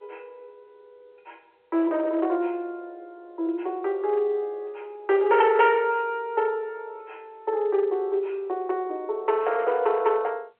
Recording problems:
telephone audio; 300 Hz to 3.3 kHz, G.711
distortion; hard clipping, uneven, signal-to-distortion ratio 11 dB

